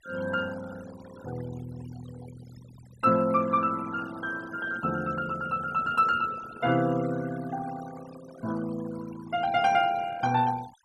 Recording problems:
denoising artefacts; signal-to-artefact ratio 18 dB

